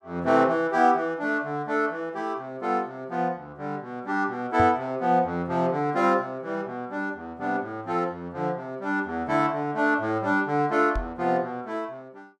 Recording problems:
microphone bump; at 4.5 s and at 11 s; peak 0 dB vs average level

